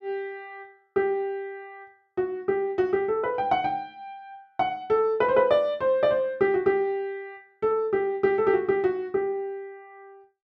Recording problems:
none

